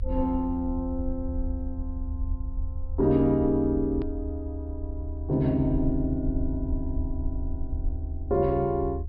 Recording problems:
treble cut off; nothing above 5.5 kHz
rumble; below 76 Hz, SNR 6 dB
edit click; at 4 s

